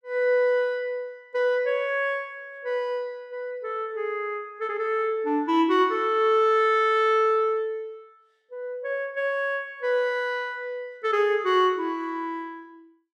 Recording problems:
none

